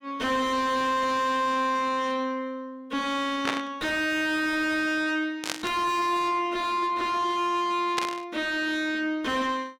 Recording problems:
distorted audio; soft clipping, signal-to-distortion ratio 4 dB
burst of static; at 3.5 s, at 5.5 s and at 8 s; peak +2 dB vs average level

